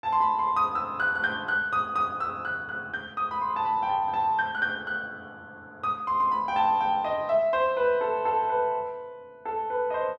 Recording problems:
none

